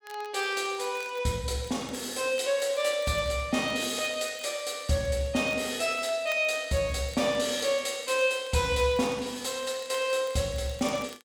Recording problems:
crackle; vinyl, SNR 24 dB

